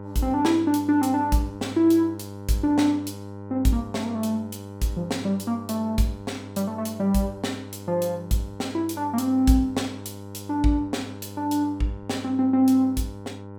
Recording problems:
electrical hum; 50 Hz, harmonics up to 1.5 kHz, SNR 14 dB

